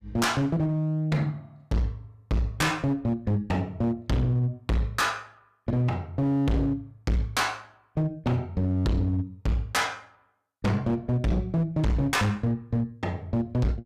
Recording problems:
distorted audio; hard clipping, uneven, signal-to-distortion ratio 6 dB

